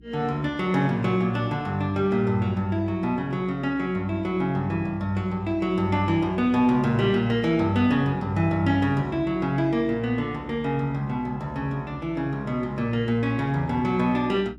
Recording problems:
hum; 60 Hz, harmonics up to 360 Hz, SNR 22 dB

